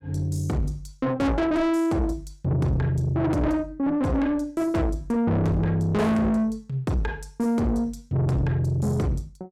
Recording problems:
distorted audio; soft clipping, signal-to-distortion ratio 7 dB

